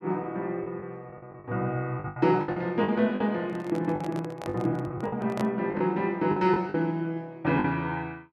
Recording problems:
packet loss; 10% of the sound replaced, filled with the last packet
handling noise; from 3.5 to 5.5 s; peak -2 dB vs average level

